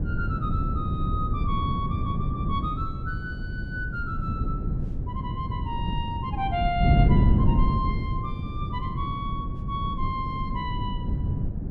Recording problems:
wind on the microphone; below 170 Hz, SNR -5 dB

